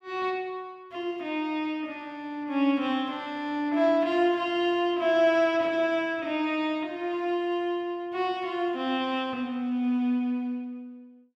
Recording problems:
none

